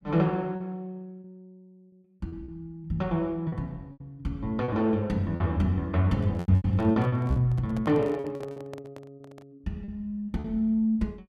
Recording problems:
packet loss; 10% of the sound replaced, filled with repeated pitch periods
microphone handling noise; from 6 to 9.5 s; peak -10 dB vs average level

